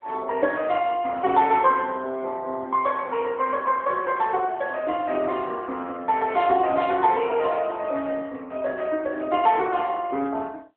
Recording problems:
telephone audio; 220 Hz to 3.6 kHz, AMR-NB

